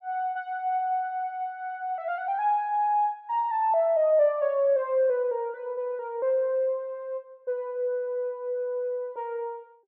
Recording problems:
none

